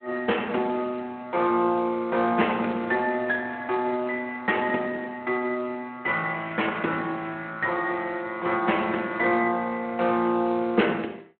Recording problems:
telephone audio; 240 Hz to 3.3 kHz, Speex

